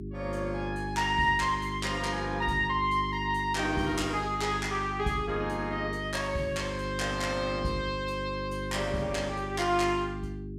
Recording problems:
mains hum; 50 Hz, harmonics up to 400 Hz, SNR 7 dB

